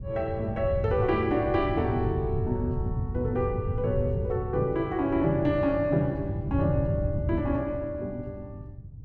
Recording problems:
wind noise; below 130 Hz, SNR 5 dB

